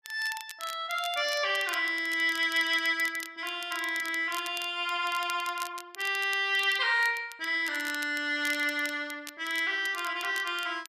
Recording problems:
crackling; vinyl, SNR 15 dB

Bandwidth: 14.5 kHz